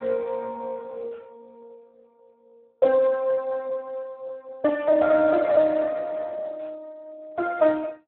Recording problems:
phone line; 190 Hz to 2.2 kHz, Speex

